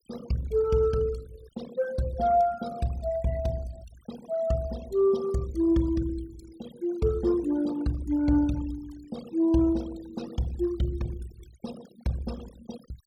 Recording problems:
noise reduction artefacts; signal-to-artefact ratio 20 dB

